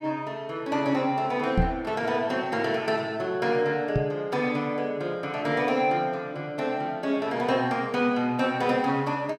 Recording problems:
microphone thump; at 1.5 s and at 4 s; peak +6 dB vs average level

